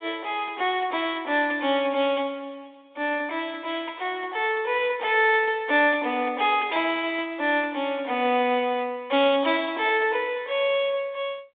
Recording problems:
telephone audio; 260 Hz to 3.7 kHz, G.726

